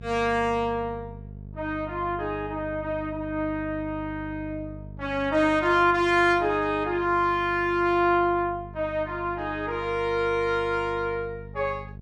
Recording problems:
mains hum; 50 Hz, harmonics up to 500 Hz, SNR 16 dB

